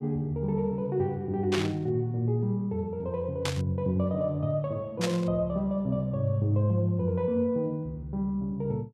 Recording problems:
burst of static; at 1.5 s, at 3.5 s and at 5 s; peak +1 dB vs average level

